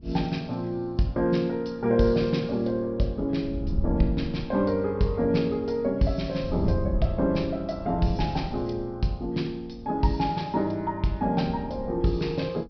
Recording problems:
treble cut off; nothing above 5.5 kHz
wind on the microphone; below 110 Hz, SNR 8 dB

